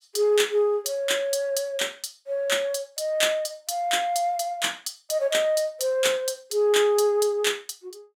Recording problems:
none

